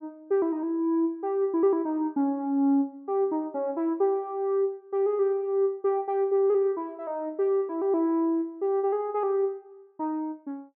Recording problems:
none

